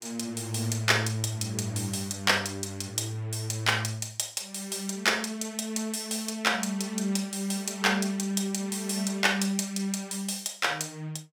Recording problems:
none

